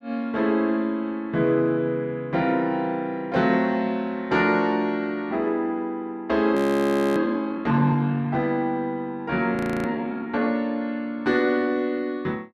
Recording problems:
frozen audio; at 6.5 s for 0.5 s and at 9.5 s

